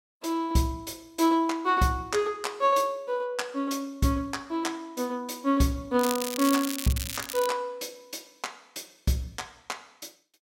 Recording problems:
crackling; from 6 to 7.5 s; loose cable, SNR 6 dB

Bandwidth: 16.5 kHz